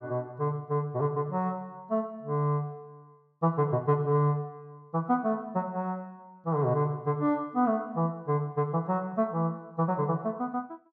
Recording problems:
none

